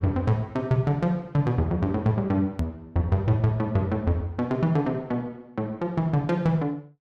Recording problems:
edit click; at 2.5 s

